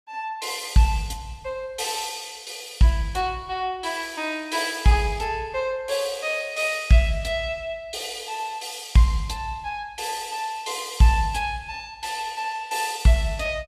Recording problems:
none

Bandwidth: 14.5 kHz